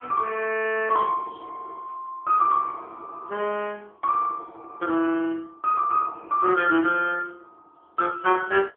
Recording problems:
telephone audio; 240 Hz to 3.2 kHz, AMR-NB

